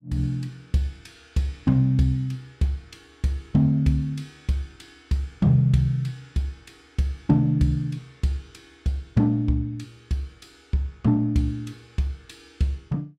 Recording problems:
none

